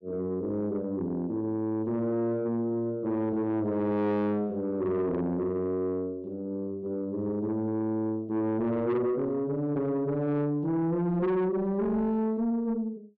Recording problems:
distortion; soft clipping, signal-to-distortion ratio 10 dB

